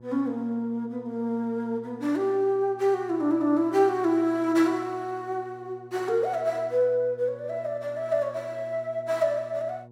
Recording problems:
electrical hum; 60 Hz, harmonics up to 960 Hz, SNR 22 dB

